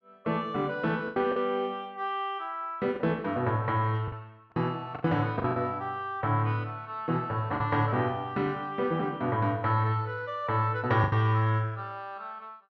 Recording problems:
packet loss; 4% of the sound replaced, filled with the last packet

